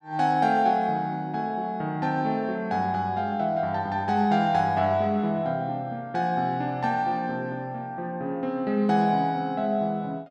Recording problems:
none

